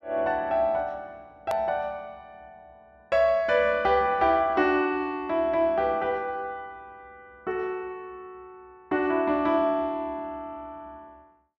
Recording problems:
click at an edit; at 1.5 s

